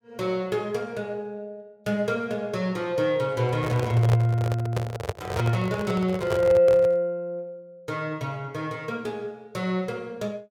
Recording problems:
microphone handling noise; from 3.5 to 7 s; peak +1 dB vs average level

